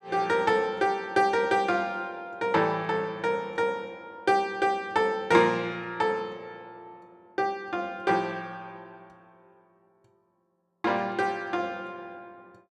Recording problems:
none

